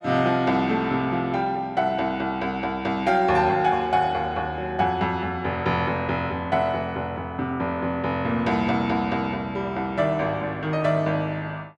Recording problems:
none

